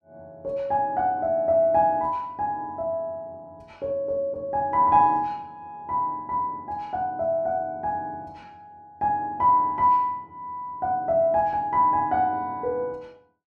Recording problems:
none

